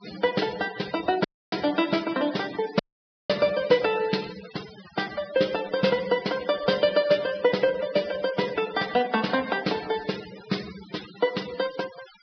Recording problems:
low-pass filter; nothing above 5.5 kHz
noise reduction artefacts; signal-to-artefact ratio 15 dB
audio cutting out; at 1.5 s and at 3 s for 0.5 s

